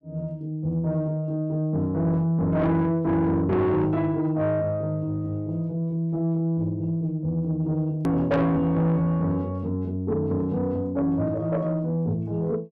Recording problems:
distorted audio; soft clipping, signal-to-distortion ratio 10 dB
hard cut with a click; at 8 s

